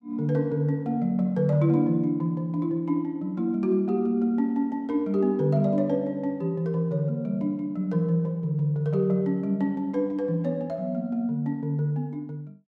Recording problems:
none

